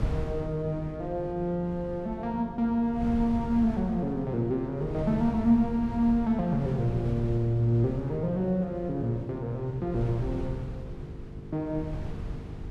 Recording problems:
electrical hum; 50 Hz, harmonics up to 450 Hz, SNR 16 dB
wind on the microphone; below 150 Hz, SNR 11 dB

